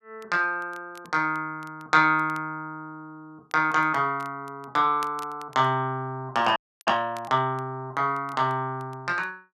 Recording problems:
crackling; vinyl, SNR 28 dB
audio freezing; at 6.5 s

